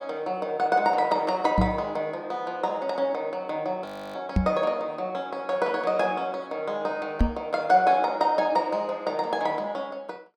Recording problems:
microphone bump; at 1.5 s, at 4.5 s and at 7 s; peak +7 dB vs average level
audio freezing; at 4 s

